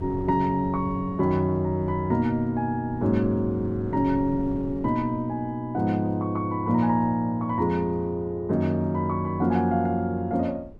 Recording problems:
wind noise; below 230 Hz, SNR 18 dB

